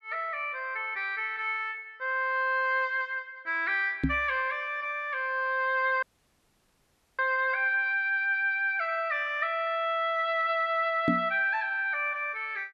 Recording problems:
knock on the microphone; at 4 s and at 11 s; peak +5 dB vs average level
audio cutting out; at 6 s for 1 s

